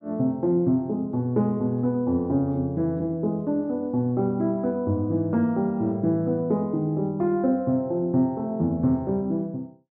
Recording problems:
none

